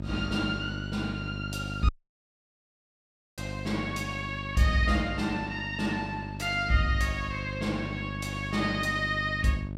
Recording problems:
hum; 50 Hz, harmonics up to 650 Hz, SNR 8 dB
dropout; at 2 s for 1.5 s

